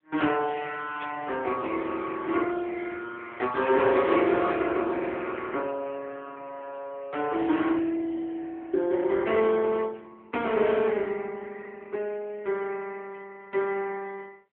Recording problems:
phone line; 260 Hz to 3.4 kHz, AMR-NB
static burst; at 1 s; peak -10 dB vs average level

